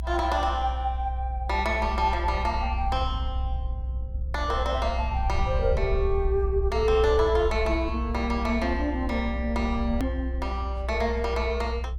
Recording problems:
rumble; below 64 Hz, strongest tone 62 Hz, SNR 3 dB
hard cut with a click; at 10 s

